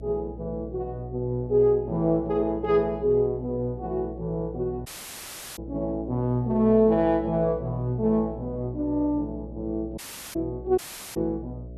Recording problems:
hum; 60 Hz, harmonics up to 660 Hz, SNR 15 dB
dropout; at 5 s for 0.5 s, at 10 s and at 11 s

